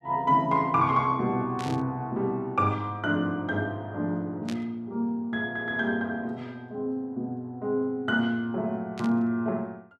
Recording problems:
static burst; at 1.5 s, at 4.5 s and at 9 s; peak -7 dB vs average level

